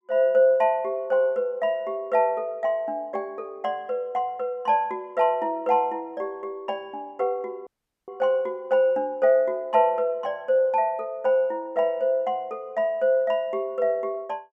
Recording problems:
audio cutting out; at 7.5 s

